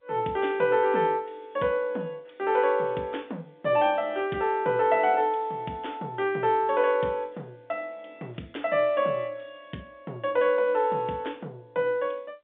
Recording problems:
phone line; 190 Hz to 3.6 kHz, G.711

